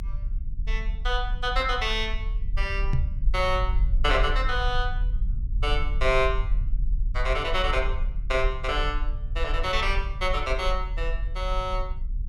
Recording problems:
rumble; below 46 Hz, SNR 2 dB
knock on the microphone; at 3 s; peak +7 dB vs average level

